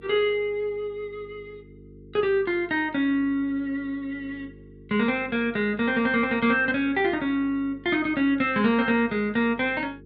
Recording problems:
mains hum; 50 Hz, harmonics up to 450 Hz, SNR 23 dB

